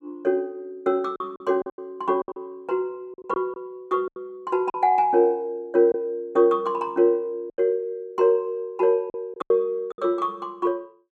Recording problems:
lost packets; 8% of the sound replaced, filled with silence

